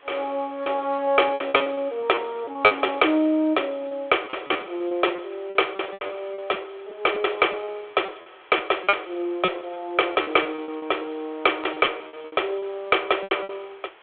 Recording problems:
phone line; 280 Hz to 3.4 kHz, G.726
background hiss; SNR 27 dB
lost packets; 14% of the sound replaced, filled with repeated pitch periods

